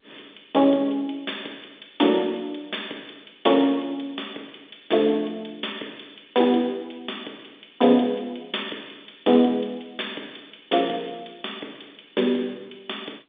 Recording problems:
phone line; 240 Hz to 3.6 kHz, G.711

